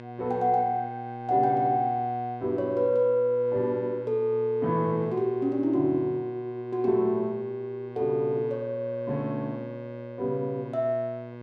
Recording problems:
hum; 60 Hz, harmonics up to 2.2 kHz, SNR 13 dB

